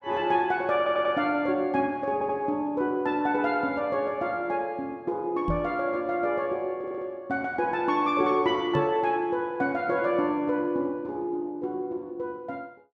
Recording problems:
audio stuttering; at 1 s, at 2 s and at 7 s
microphone bump; at 5.5 s and at 9 s; peak +1 dB vs average level

